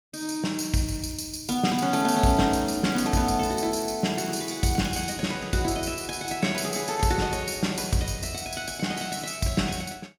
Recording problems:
crackling; from 1 to 5 s; loose cable, SNR 23 dB

